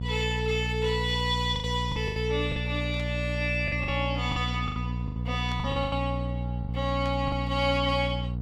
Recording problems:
mains hum; 60 Hz, harmonics up to 480 Hz, SNR 3 dB
lost packets; 9% of the sound replaced, filled with the last packet
burst of static; at 3 s, at 5.5 s and at 7 s; peak -11 dB vs average level

